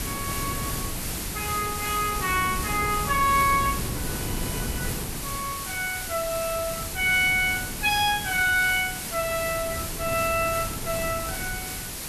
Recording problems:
background hiss; slope 0 dB per octave, SNR 7 dB
wind on the microphone; below 330 Hz, SNR 10 dB

